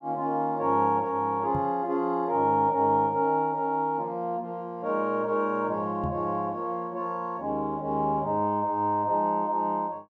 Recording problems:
microphone bump; at 1.5 s and at 6 s; peak -2 dB vs average level

